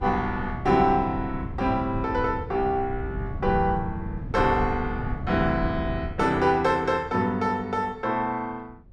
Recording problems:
wind on the microphone; below 140 Hz, SNR 9 dB

